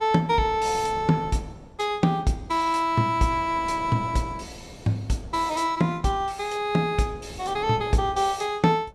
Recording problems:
wind noise; below 550 Hz, SNR 19 dB

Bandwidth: 15.5 kHz